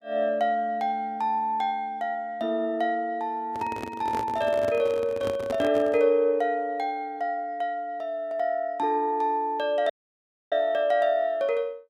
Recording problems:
microphone handling noise; from 3.5 to 6 s; peak -4 dB vs average level
audio cutting out; at 10 s for 0.5 s

